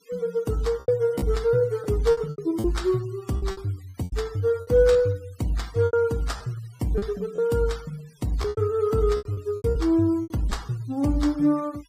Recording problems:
noise reduction artefacts; signal-to-artefact ratio 24 dB
packet loss; 11% of the sound replaced, filled with repeated pitch periods

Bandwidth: 15.5 kHz